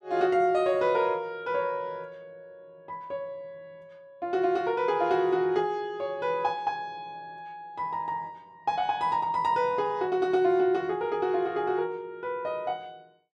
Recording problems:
none

